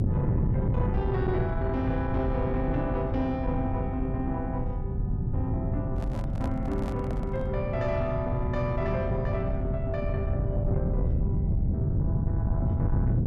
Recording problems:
distorted audio; soft clipping, signal-to-distortion ratio 11 dB
low-frequency rumble; below 150 Hz, SNR -2 dB
handling noise; from 6 to 7.5 s; peak -3 dB vs average level

